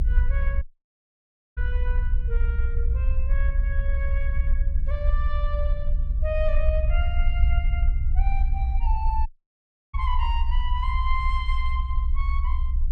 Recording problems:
rumble; below 62 Hz, strongest tone 22 Hz, SNR -8 dB
audio cutting out; at 0.5 s for 1 s and at 9.5 s for 0.5 s

